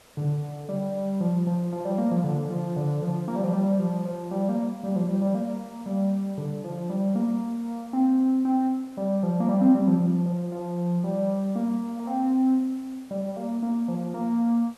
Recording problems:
hiss; SNR 27 dB

